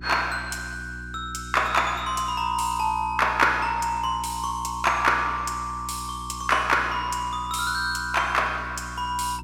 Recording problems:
electrical hum; 60 Hz, harmonics up to 360 Hz, SNR 16 dB

